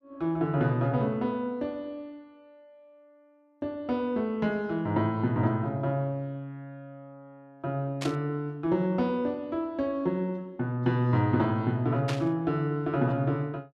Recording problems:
static burst; at 8 s and at 12 s; peak -2 dB vs average level

